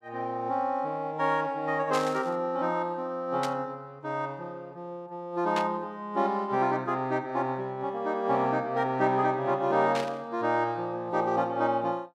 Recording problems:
static burst; 4 times, first at 2 s; peak -2 dB vs average level

